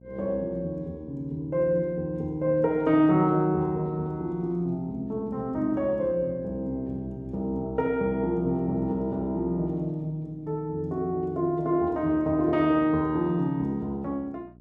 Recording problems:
hum; 60 Hz, harmonics up to 720 Hz, SNR 22 dB

